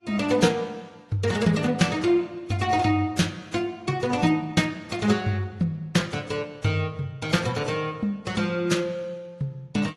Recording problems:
codec artefacts; AAC, then AAC, log-spectral distance 3 dB, nothing above 11.6 kHz

